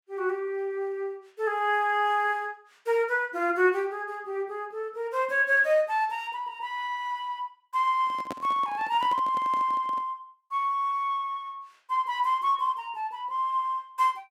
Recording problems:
microphone handling noise; from 8 to 10 s; peak -4 dB vs average level

